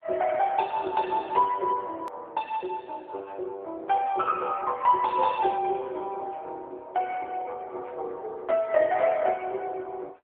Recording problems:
telephone audio; 320 Hz to 2.6 kHz, AMR-NB
edit click; at 2 s

